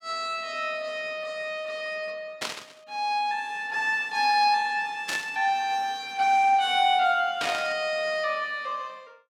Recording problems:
burst of static; at 2.5 s, at 5 s and at 7.5 s; peak -1 dB vs average level

